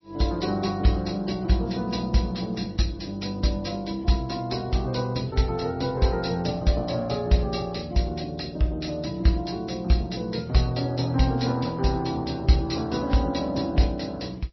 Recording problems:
lossy codec; AAC, then MP3, log-spectral distance 5 dB, nothing above 5.7 kHz

